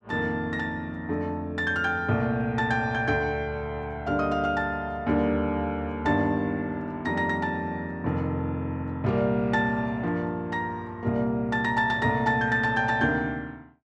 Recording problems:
none

